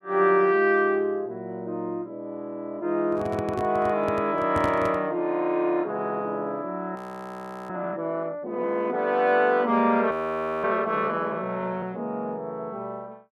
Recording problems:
microphone handling noise; from 3 to 5 s; peak 0 dB vs average level
frozen audio; at 7 s for 0.5 s and at 10 s for 0.5 s

